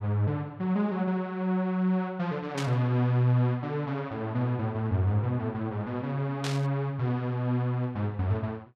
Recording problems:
burst of static; at 2.5 s and at 6.5 s; peak -2 dB vs average level

